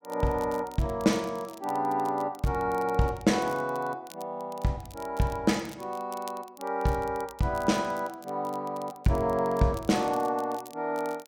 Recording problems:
crackle; vinyl, SNR 22 dB

